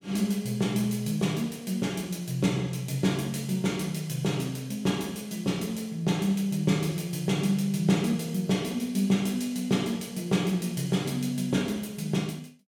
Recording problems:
none

